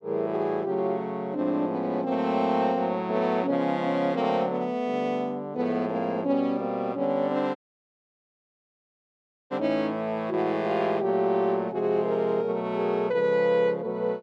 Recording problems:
dropout; at 7.5 s for 2 s

